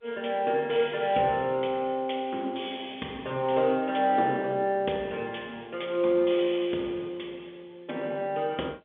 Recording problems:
telephone audio; 220 Hz to 3.7 kHz, G.711

